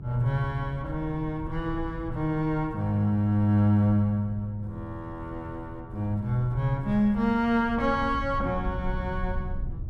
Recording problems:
electrical hum; 60 Hz, harmonics up to 720 Hz, SNR 21 dB
rumble; below 96 Hz, SNR 13 dB

